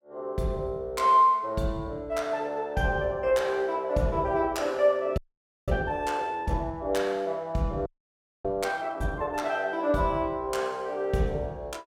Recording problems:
frozen audio; at 5 s for 0.5 s and at 8 s for 0.5 s

